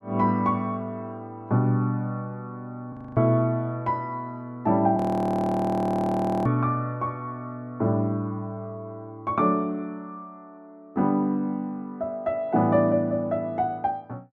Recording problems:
frozen audio; at 3 s and at 5 s for 1.5 s

